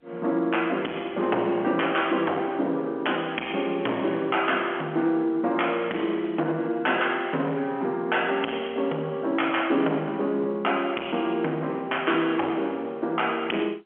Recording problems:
phone line; 220 Hz to 3.3 kHz, G.711
distorted audio; soft clipping, signal-to-distortion ratio 12 dB

